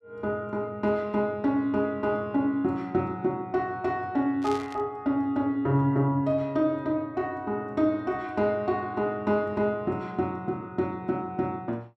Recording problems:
static burst; at 4.5 s; peak -9 dB vs average level

